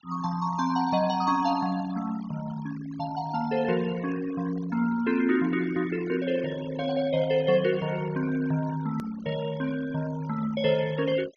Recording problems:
treble cut off; nothing above 6.7 kHz
noise reduction artefacts; signal-to-artefact ratio 18 dB
click at an edit; at 9 s

